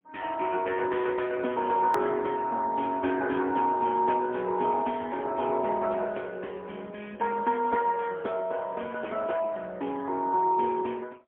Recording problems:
phone line; 240 Hz to 3.4 kHz, AMR-NB, then MP3
click at an edit; at 2 s

